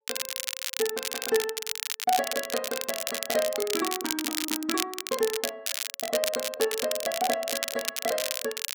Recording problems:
crackling; vinyl, SNR 0 dB

